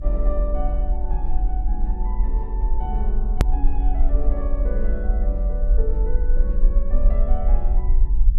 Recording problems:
rumble; below 46 Hz, strongest tone 22 Hz, SNR -10 dB
edit click; at 3.5 s

